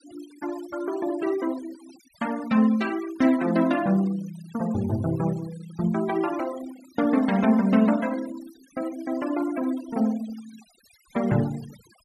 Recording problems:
noise reduction artefacts; signal-to-artefact ratio 19 dB

